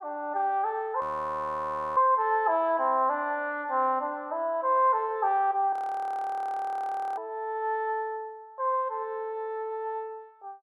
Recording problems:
audio freezing; at 1 s for 1 s and at 5.5 s for 1.5 s

